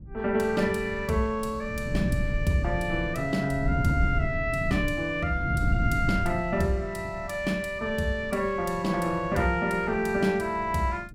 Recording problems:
wind noise; below 150 Hz, SNR 5 dB

